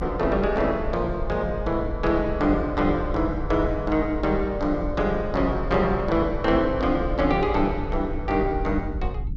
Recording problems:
rumble; below 82 Hz, SNR 8 dB

